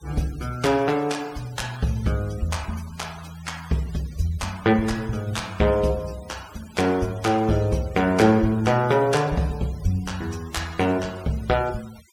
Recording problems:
denoising artefacts; signal-to-artefact ratio 21 dB

